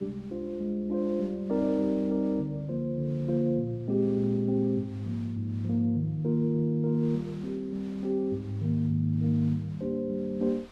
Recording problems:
wind noise; below 2.5 kHz, SNR 27 dB

